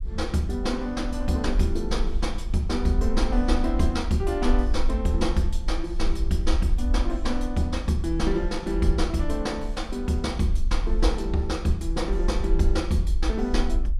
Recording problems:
rumble; below 50 Hz, SNR 2 dB

